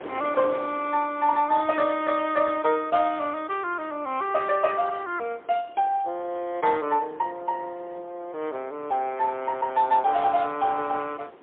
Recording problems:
phone line; 260 Hz to 3.5 kHz, AMR-NB, then MP3
wind on the microphone; below 950 Hz, SNR 22 dB

